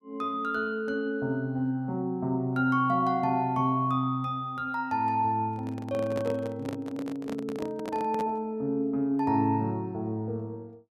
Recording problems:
handling noise; from 5.5 to 8.5 s; peak -4 dB vs average level

